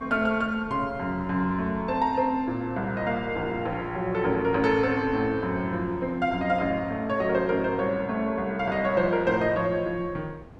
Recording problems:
wind noise; below 440 Hz, SNR 19 dB

